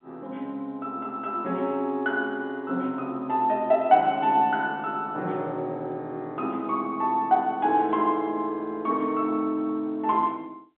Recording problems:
phone line; 190 Hz to 3.7 kHz, G.711

